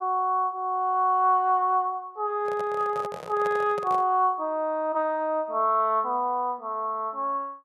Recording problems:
handling noise; from 2.5 to 4 s; peak -8 dB vs average level

